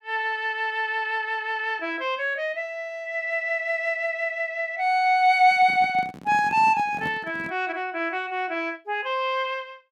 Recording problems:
handling noise; from 5.5 to 7.5 s; peak -7 dB vs average level

